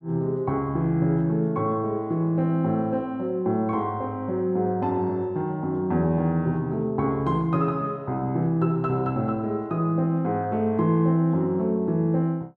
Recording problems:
none

